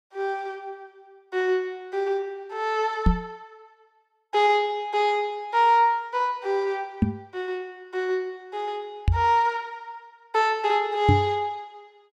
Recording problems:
knock on the microphone; 4 times, first at 3 s; peak +8 dB vs average level

